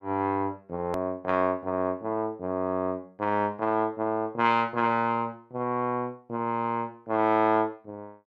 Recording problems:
hard cut with a click; at 1 s

